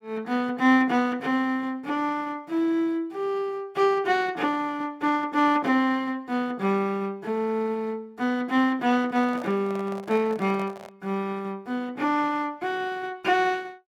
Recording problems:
handling noise; from 9 to 11 s; peak -11 dB vs average level

